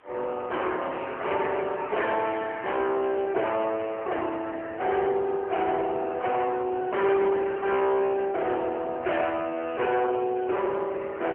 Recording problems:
telephone audio; 320 Hz to 3.4 kHz, AMR-NB
distorted audio; hard clipping, uneven, signal-to-distortion ratio 10 dB
hiss; SNR 29 dB

